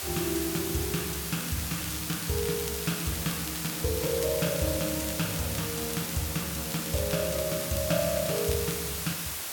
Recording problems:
hiss; slope 0 dB per octave, SNR 1 dB
crackle; 4 times, first at 1.5 s; loose cable, SNR 10 dB

